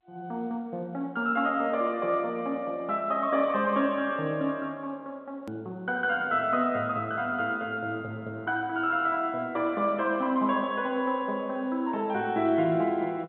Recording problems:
telephone audio; 130 Hz to 3.6 kHz, G.711
hard cut with a click; at 5.5 s

